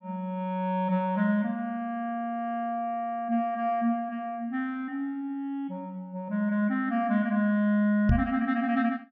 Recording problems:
low-pass filter; nothing above 7 kHz
knock on the microphone; at 8 s; peak +7 dB vs average level

